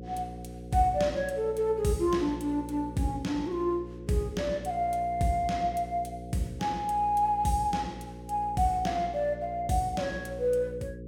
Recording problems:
hum; 60 Hz, harmonics up to 540 Hz, SNR 13 dB

